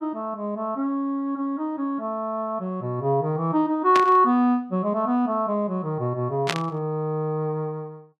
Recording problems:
burst of static; at 4 s and at 6.5 s; peak +4 dB vs average level

